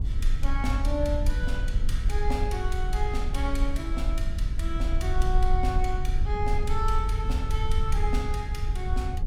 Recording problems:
rumble; below 58 Hz, SNR -4 dB

